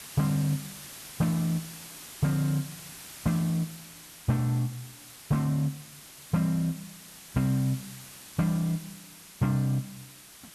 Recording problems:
hiss; slope 0 dB per octave, SNR 15 dB

